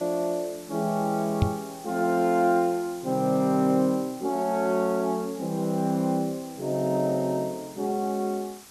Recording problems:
background hiss; slope 0 dB per octave, SNR 19 dB
microphone thump; at 1.5 s; peak +7 dB vs average level

